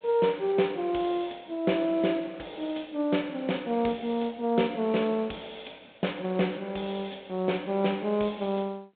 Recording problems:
telephone audio; 130 Hz to 3.8 kHz, G.726

